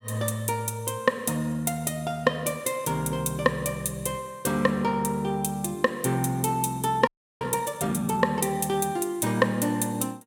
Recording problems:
audio freezing; at 7 s

